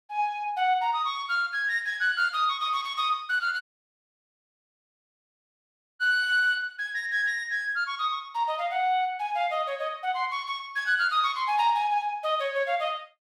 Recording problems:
audio cutting out; at 3.5 s for 2.5 s

